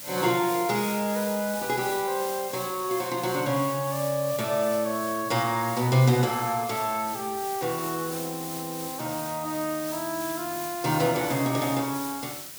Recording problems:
hiss; SNR 8 dB

